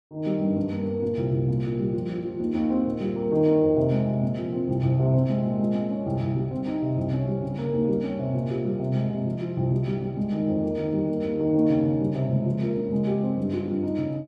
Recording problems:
none

